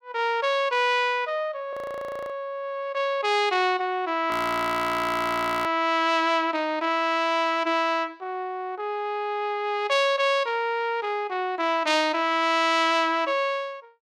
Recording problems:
frozen audio; at 1.5 s for 0.5 s and at 4.5 s for 1.5 s

